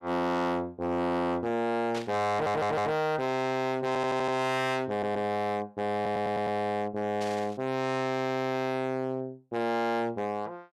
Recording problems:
distortion; hard clipping, uneven, signal-to-distortion ratio 6 dB
burst of static; at 2 s and at 7 s; peak -5 dB vs average level
stutter; 4 times, first at 2.5 s

